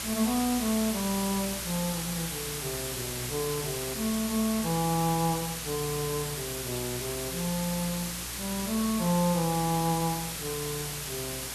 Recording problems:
hum; 60 Hz, harmonics up to 480 Hz, SNR 16 dB
background hiss; slope 0 dB per octave, SNR 3 dB

